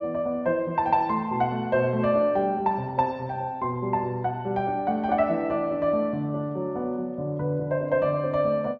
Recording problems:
low-pass filter; nothing above 8 kHz

